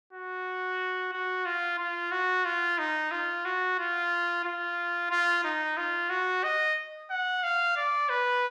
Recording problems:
none

